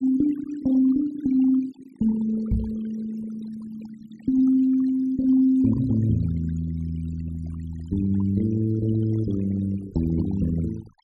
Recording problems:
denoising artefacts; signal-to-artefact ratio 18 dB
microphone thump; at 2.5 s; peak +2 dB vs average level

